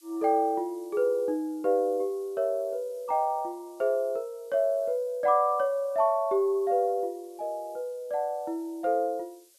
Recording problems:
hiss; slope +5 dB per octave, SNR 29 dB

